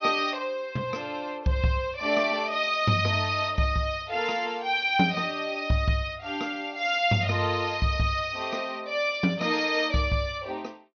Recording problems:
treble missing; nothing above 6.3 kHz

